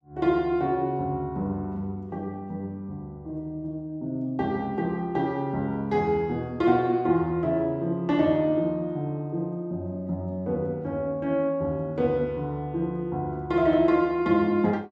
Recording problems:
none

